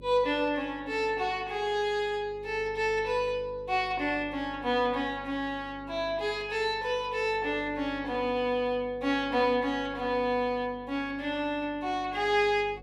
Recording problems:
hum; 50 Hz, harmonics up to 550 Hz, SNR 21 dB

